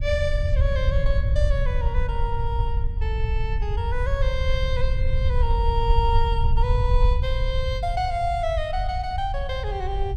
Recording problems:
low-frequency rumble; below 76 Hz, SNR -3 dB

